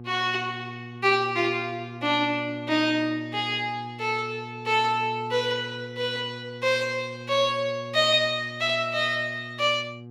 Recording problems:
electrical hum; 60 Hz, harmonics up to 840 Hz, SNR 15 dB

